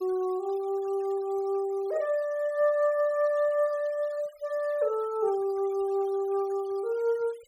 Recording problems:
denoising artefacts; signal-to-artefact ratio 26 dB

